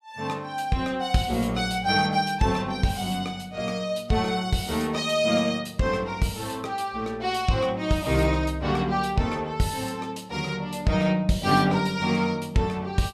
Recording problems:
none

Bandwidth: 15 kHz